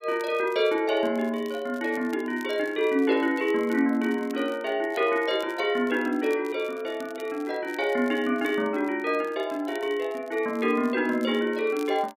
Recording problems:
crackling; vinyl, SNR 26 dB

